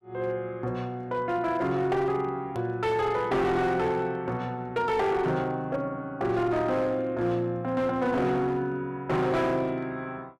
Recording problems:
distortion; hard clipping, signal-to-distortion ratio 11 dB
hard cut with a click; at 2.5 s

